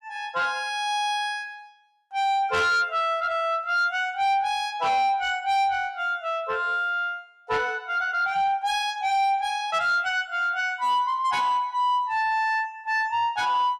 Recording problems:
distorted audio; soft clipping, signal-to-distortion ratio 11 dB

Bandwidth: 14 kHz